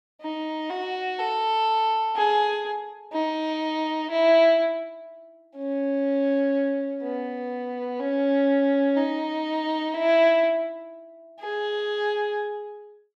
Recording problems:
none

